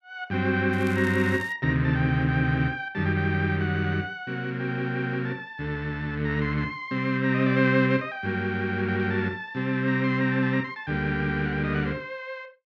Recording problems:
crackling; at 0.5 s; loose cable, SNR 21 dB

